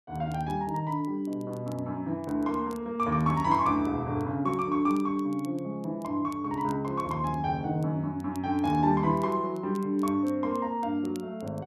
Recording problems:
crackle; vinyl, SNR 28 dB

